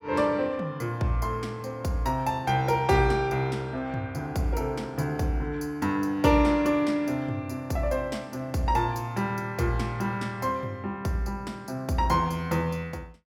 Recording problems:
none

